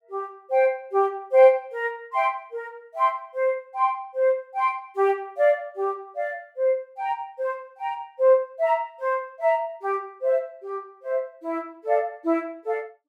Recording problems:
none

